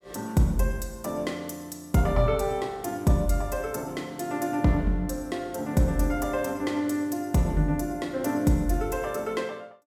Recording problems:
none

